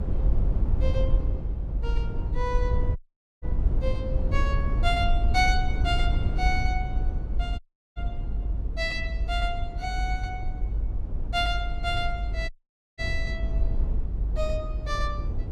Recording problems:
low-frequency rumble; below 66 Hz, SNR -2 dB
dropout; at 3 s, at 7.5 s and at 12 s

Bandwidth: 15.5 kHz